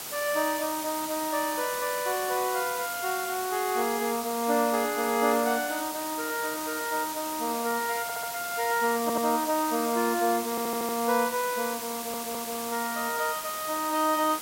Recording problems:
hiss; slope -1 dB per octave, SNR 6 dB
stutter; 4 times, first at 8 s

